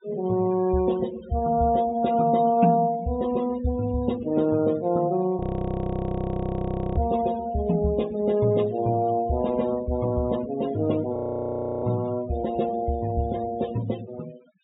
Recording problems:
treble cut off; nothing above 4 kHz
denoising artefacts; signal-to-artefact ratio 19 dB
frozen audio; at 5.5 s for 1.5 s and at 11 s for 0.5 s

